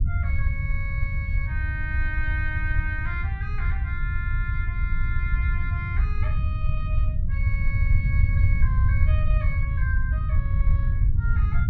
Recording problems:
rumble; below 90 Hz, SNR -9 dB

